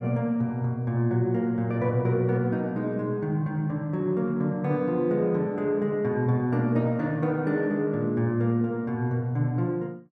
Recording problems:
none

